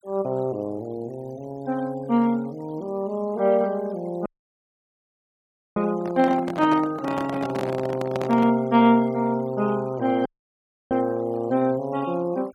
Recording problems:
denoising artefacts; signal-to-artefact ratio 25 dB
audio cutting out; at 4.5 s for 1.5 s and at 10 s for 0.5 s
microphone handling noise; from 6 to 8.5 s; peak -2 dB vs average level

